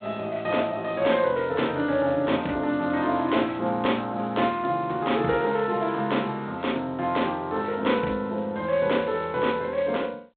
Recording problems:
telephone audio; 190 Hz to 3.7 kHz, G.726

